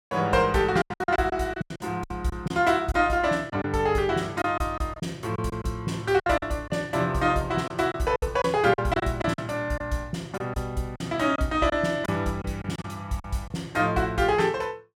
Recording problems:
packet loss; 9% of the sound replaced, filled with silence

